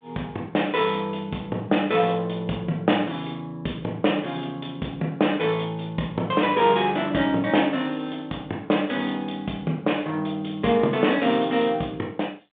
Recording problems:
telephone audio; 190 Hz to 3.6 kHz, G.726

